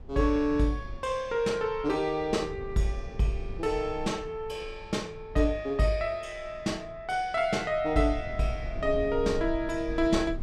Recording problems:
low-frequency rumble; below 78 Hz, SNR 14 dB

